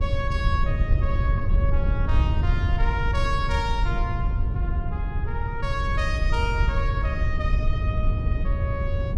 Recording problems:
wind on the microphone; below 88 Hz, SNR -6 dB

